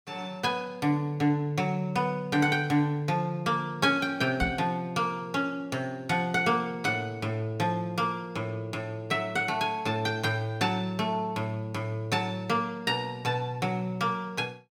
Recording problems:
microphone thump; at 4.5 s; peak +1 dB vs average level

